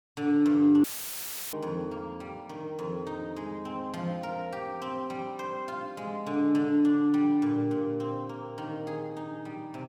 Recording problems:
audio cutting out; at 1 s for 0.5 s; filled with static

